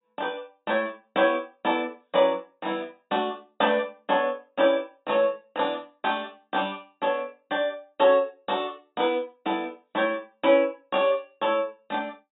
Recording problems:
low-pass filter; nothing above 4 kHz

